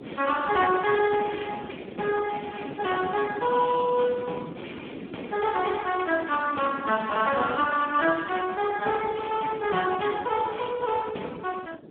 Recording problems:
phone line; 240 Hz to 2.3 kHz, Speex
wind noise; below 450 Hz, SNR 14 dB

